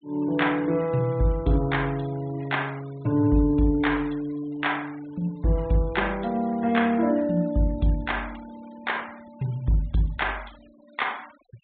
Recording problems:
treble missing; nothing above 4 kHz
denoising artefacts; signal-to-artefact ratio 25 dB

